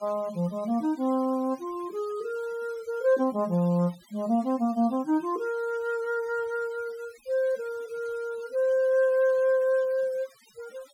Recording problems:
noise reduction artefacts; signal-to-artefact ratio 26 dB

